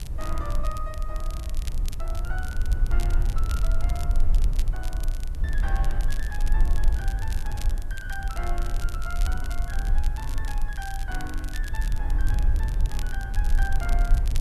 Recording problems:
hiss; slope 0 dB per octave, SNR 21 dB
rumble; below 50 Hz, strongest tone 18 Hz, SNR -10 dB
wind on the microphone; below 72 Hz, SNR 3 dB
crackle; vinyl, SNR 6 dB

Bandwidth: 13 kHz